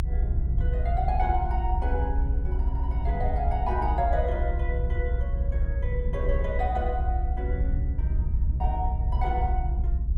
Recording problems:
rumble; below 70 Hz, SNR -4 dB

